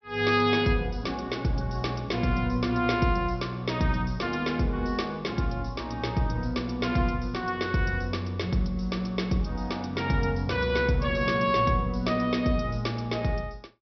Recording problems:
treble cut off; nothing above 5.8 kHz

